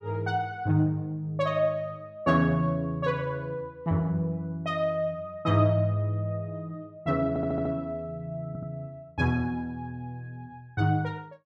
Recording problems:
stutter; at 7.5 s and at 8.5 s

